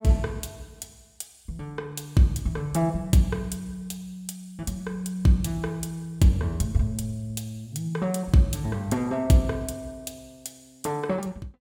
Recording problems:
none

